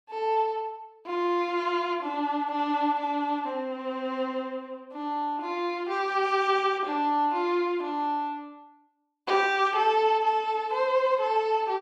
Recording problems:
none

